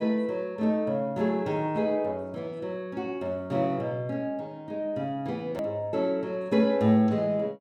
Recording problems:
click at an edit; at 5.5 s

